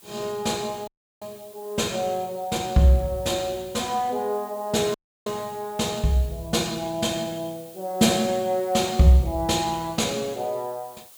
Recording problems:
hiss; SNR 22 dB
dropout; at 1 s and at 5 s

